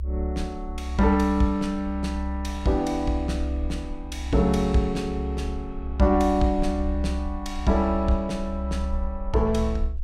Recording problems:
low-frequency rumble; below 68 Hz, strongest tone 66 Hz, SNR 7 dB

